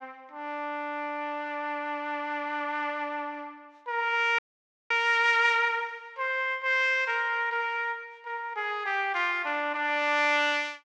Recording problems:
audio cutting out; at 4.5 s for 0.5 s

